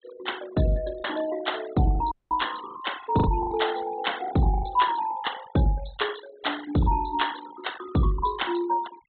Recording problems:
treble missing; nothing above 4 kHz
denoising artefacts; signal-to-artefact ratio 16 dB
lost packets; 6% of the sound replaced, filled with the last packet
audio cutting out; at 2 s

